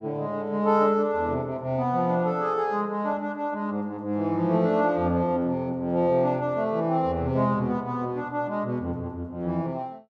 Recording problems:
none

